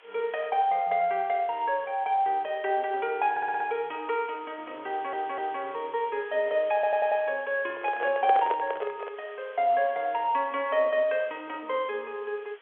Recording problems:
telephone audio; 340 Hz to 3.5 kHz, G.711
hiss; SNR 25 dB
stutter; at 3.5 s, at 5 s and at 6.5 s
handling noise; from 7.5 to 9 s; peak +1 dB vs average level

